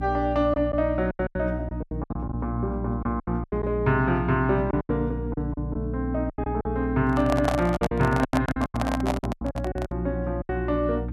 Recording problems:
hum; 60 Hz, harmonics up to 300 Hz, SNR 6 dB
lost packets; 13% of the sound replaced, filled with silence
handling noise; from 7 to 10 s; peak +5 dB vs average level

